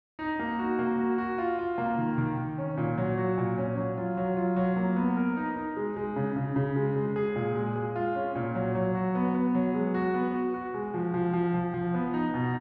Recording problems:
none

